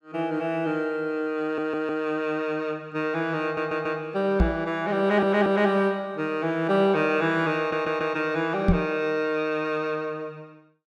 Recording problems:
stutter; 4 times, first at 1.5 s
microphone bump; at 4.5 s and at 8.5 s; peak +8 dB vs average level

